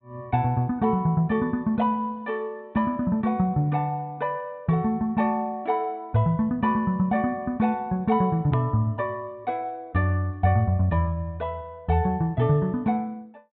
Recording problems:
treble missing; nothing above 4 kHz
hard cut with a click; at 8.5 s

